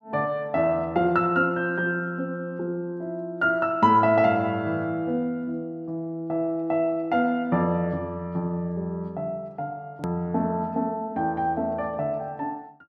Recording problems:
edit click; at 10 s

